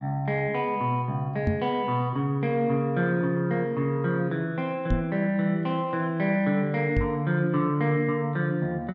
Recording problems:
low-pass filter; nothing above 8 kHz
microphone thump; at 1.5 s, at 5 s and at 7 s; peak +4 dB vs average level

